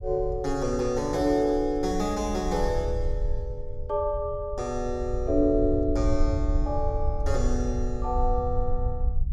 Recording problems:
rumble; below 64 Hz, SNR 5 dB

